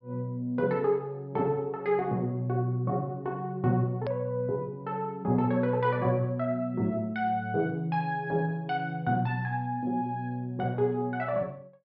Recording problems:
treble cut off; nothing above 5.3 kHz
edit click; at 4 s

